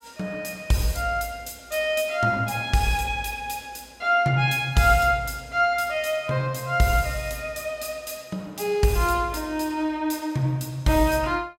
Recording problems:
none

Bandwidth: 16.5 kHz